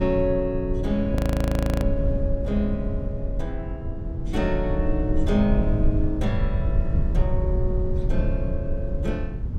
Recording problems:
rumble; below 98 Hz, SNR -1 dB
frozen audio; at 1 s for 0.5 s

